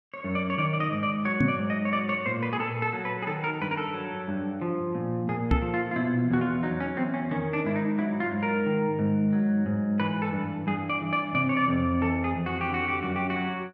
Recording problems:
knock on the microphone; at 1.5 s and at 5.5 s; peak +7 dB vs average level

